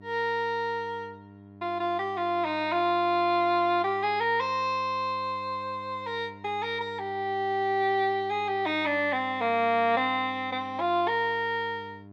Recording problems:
mains hum; 50 Hz, harmonics up to 1.4 kHz, SNR 21 dB

